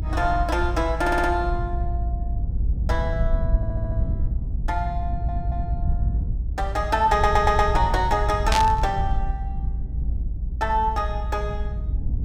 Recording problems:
low-frequency rumble; below 78 Hz, SNR 3 dB
audio stuttering; 4 times, first at 1 s
static burst; at 8.5 s; peak +4 dB vs average level

